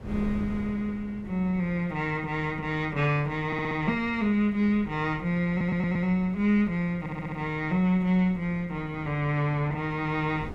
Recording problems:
wind noise; below 290 Hz, SNR 17 dB
stutter; at 3.5 s, at 5.5 s and at 7 s

